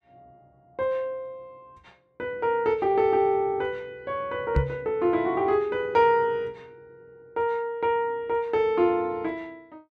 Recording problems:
microphone thump; at 4.5 s; peak +5 dB vs average level

